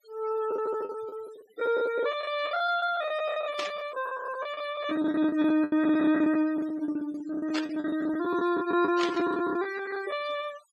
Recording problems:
denoising artefacts; signal-to-artefact ratio 16 dB
packet loss; 17% of the sound replaced, filled with the last packet
static burst; at 3.5 s, at 7.5 s and at 9 s; peak -1 dB vs average level

